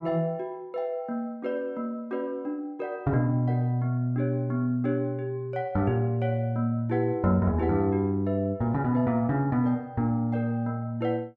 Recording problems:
none

